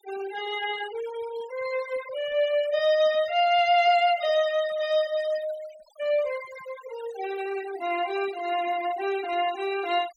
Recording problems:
noise reduction artefacts; signal-to-artefact ratio 16 dB

